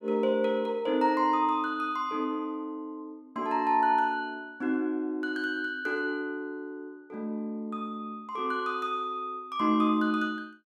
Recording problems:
none

